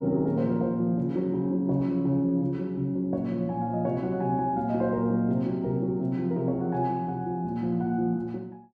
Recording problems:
none

